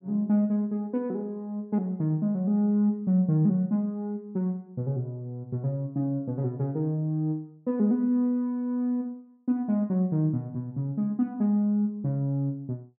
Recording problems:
none

